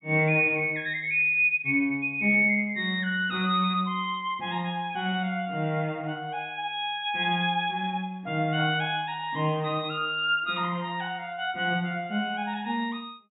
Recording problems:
low-pass filter; nothing above 4 kHz

